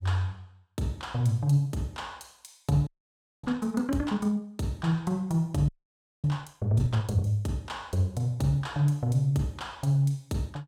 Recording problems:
frozen audio; at 3 s for 0.5 s and at 5.5 s for 0.5 s

